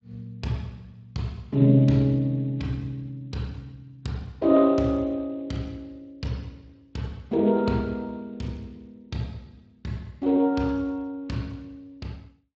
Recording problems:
lossy compression; Speex, log-spectral distance 2 dB

